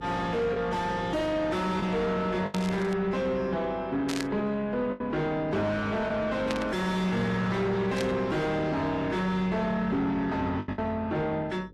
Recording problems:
lossy codec; AAC, log-spectral distance 2 dB, nothing above 13.1 kHz
distorted audio; soft clipping, signal-to-distortion ratio 6 dB
hum; 50 Hz, harmonics up to 550 Hz, SNR 21 dB
lost packets; 3% of the sound replaced, filled with the last packet
burst of static; 4 times, first at 2.5 s; peak -1 dB vs average level

